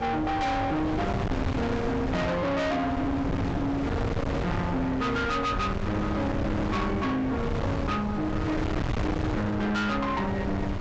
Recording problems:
treble cut off; nothing above 8 kHz
distorted audio; soft clipping, signal-to-distortion ratio 6 dB
wind noise; below 560 Hz, SNR 3 dB

